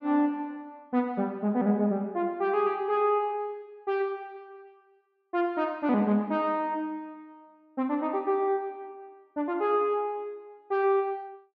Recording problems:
none

